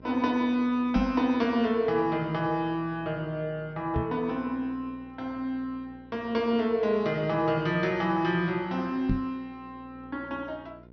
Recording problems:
treble cut off; nothing above 6.1 kHz
hum; 60 Hz, harmonics up to 1 kHz, SNR 23 dB
knock on the microphone; at 1 s, at 4 s and at 9 s; peak +4 dB vs average level

